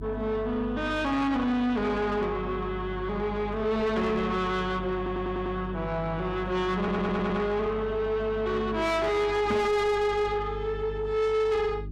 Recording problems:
distorted audio; soft clipping, signal-to-distortion ratio 8 dB
hum; 50 Hz, harmonics up to 400 Hz, SNR 11 dB
stutter; at 5 s and at 7 s
knock on the microphone; at 9.5 s; peak +5 dB vs average level

